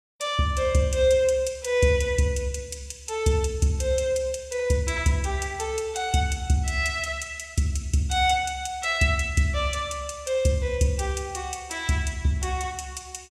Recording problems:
none

